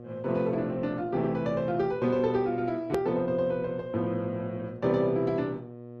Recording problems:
codec artefacts; Opus, log-spectral distance 2 dB, nothing above 13.1 kHz
hum; 60 Hz, harmonics up to 1.2 kHz, SNR 17 dB
hard cut with a click; at 3 s

